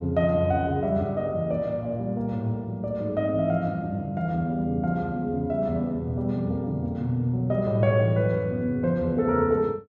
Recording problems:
none

